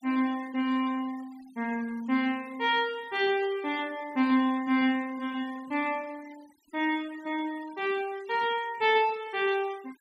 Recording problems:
denoising artefacts; signal-to-artefact ratio 22 dB

